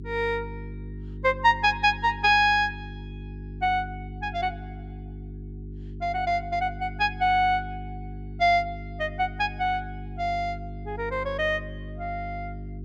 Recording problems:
electrical hum; 50 Hz, harmonics up to 400 Hz, SNR 13 dB

